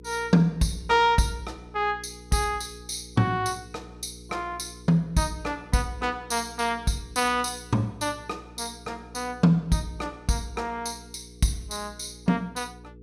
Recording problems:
electrical hum; 60 Hz, harmonics up to 480 Hz, SNR 20 dB

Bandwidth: 15 kHz